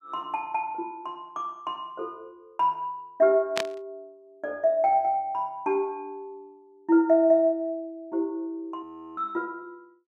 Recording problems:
burst of static; at 3.5 s; peak +2 dB vs average level
audio freezing; at 9 s

